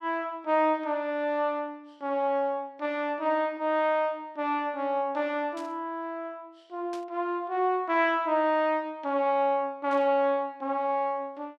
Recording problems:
burst of static; at 5.5 s, at 7 s and at 10 s; peak -14 dB vs average level

